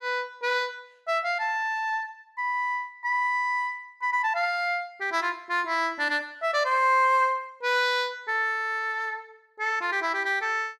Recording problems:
none

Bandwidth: 14.5 kHz